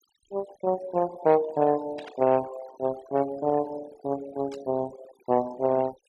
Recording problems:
noise reduction artefacts; signal-to-artefact ratio 18 dB
static burst; at 2 s and at 4.5 s; peak -13 dB vs average level

